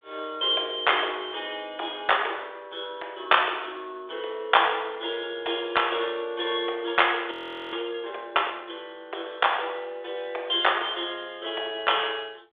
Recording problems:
telephone audio; 300 Hz to 3.6 kHz, G.726
audio freezing; at 7.5 s

